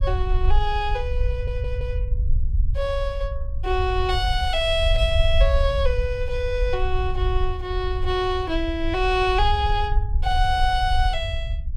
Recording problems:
rumble; below 64 Hz, SNR 2 dB
stutter; at 1.5 s

